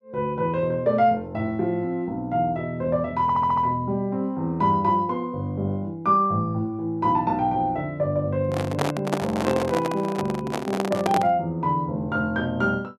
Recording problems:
stutter; at 3 s
handling noise; from 8.5 to 11 s; peak +3 dB vs average level

